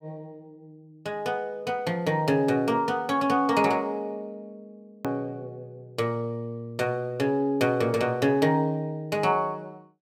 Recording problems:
click at an edit; at 5 s

